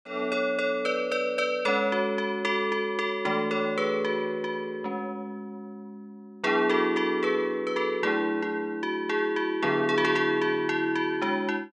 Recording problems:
none

